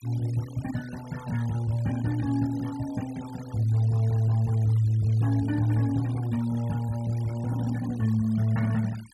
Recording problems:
denoising artefacts; signal-to-artefact ratio 22 dB

